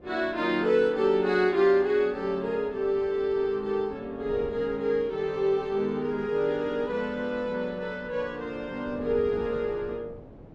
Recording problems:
wind noise; below 470 Hz, SNR 20 dB

